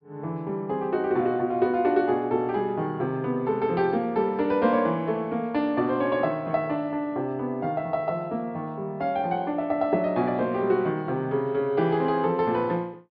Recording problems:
treble cut off; nothing above 5.5 kHz

